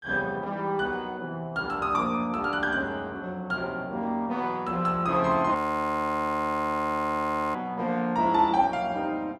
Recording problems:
audio freezing; at 5.5 s for 2 s

